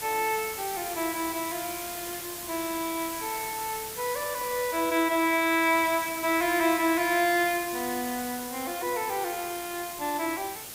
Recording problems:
hiss; slope -1 dB per octave, SNR 8 dB

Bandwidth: 15.5 kHz